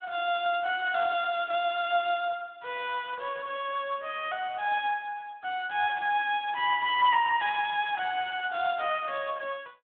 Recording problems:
phone line; 300 Hz to 3.6 kHz, Speex

